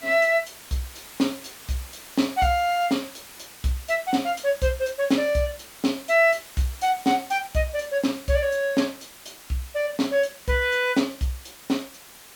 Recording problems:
hiss; slope -1 dB per octave, SNR 18 dB

